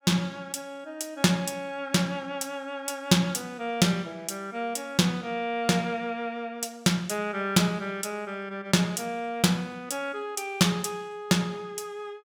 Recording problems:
none

